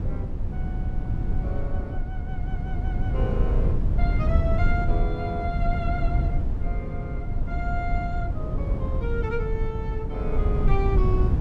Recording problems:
wind noise; below 100 Hz, SNR -6 dB

